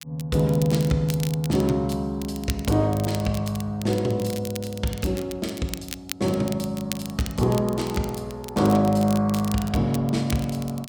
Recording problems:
crackle; vinyl, SNR 14 dB

